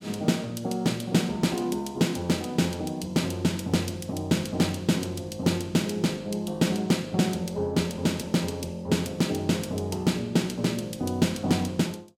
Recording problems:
lossy compression; Vorbis, log-spectral distance 3 dB, nothing above 16 kHz

